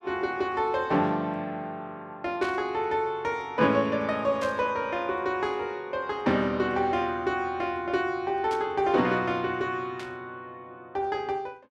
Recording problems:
burst of static; 4 times, first at 2.5 s; peak -8 dB vs average level

